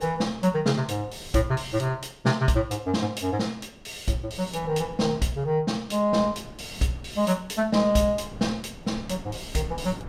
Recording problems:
wind on the microphone; below 320 Hz, SNR 19 dB

